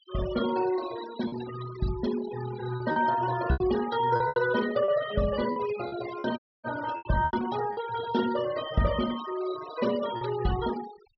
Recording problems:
treble cut off; nothing above 5.5 kHz
denoising artefacts; signal-to-artefact ratio 13 dB
packet loss; 7% of the sound replaced, filled with repeated pitch periods
dropout; at 6.5 s

